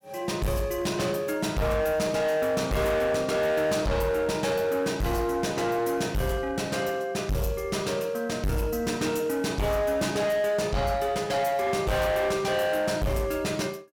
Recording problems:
distorted audio; hard clipping, uneven, signal-to-distortion ratio 7 dB

